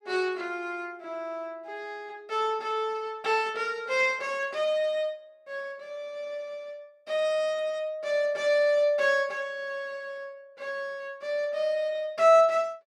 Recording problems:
none

